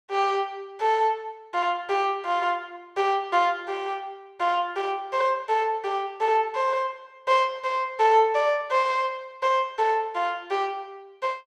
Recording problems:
none

